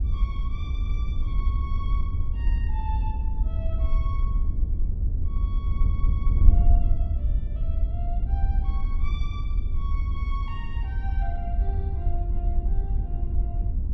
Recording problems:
wind noise; below 66 Hz, SNR -16 dB
audio stuttering; at 5.5 s

